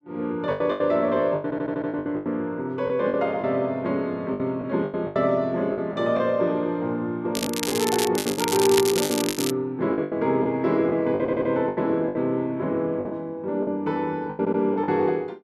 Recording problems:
packet loss; 12% of the sound replaced, filled with the last packet
audio stuttering; at 1.5 s, at 11 s and at 14 s
crackling; from 7.5 to 9.5 s; loose cable, SNR 4 dB

